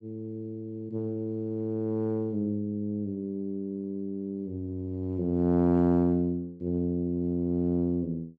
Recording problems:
none

